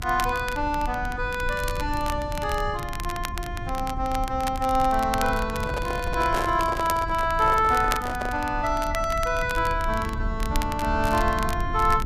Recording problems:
rumble; below 92 Hz, SNR 9 dB
crackle; vinyl, SNR 13 dB
microphone handling noise; from 5.5 to 8.5 s; peak -2 dB vs average level

